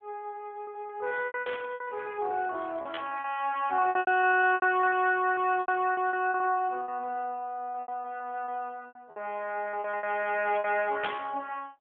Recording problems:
phone line; 240 Hz to 3.3 kHz, AMR-NB
packet loss; 15% of the sound replaced, filled with repeated pitch periods
static burst; 4 times, first at 1.5 s; peak 0 dB vs average level

